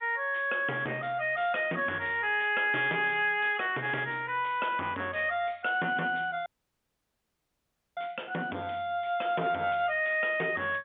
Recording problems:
phone line; 240 Hz to 3.6 kHz, G.711
distortion; soft clipping, signal-to-distortion ratio 11 dB
audio cutting out; at 6.5 s for 1.5 s

